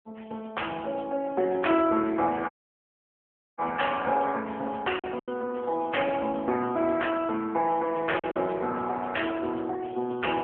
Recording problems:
telephone audio; 280 Hz to 3.2 kHz, AMR-NB
packet loss; 2% of the sound replaced, filled with silence
dropout; at 2.5 s for 1 s

